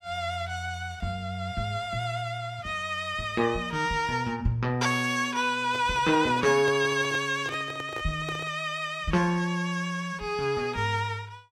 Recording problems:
handling noise; from 5.5 to 8.5 s; peak -5 dB vs average level

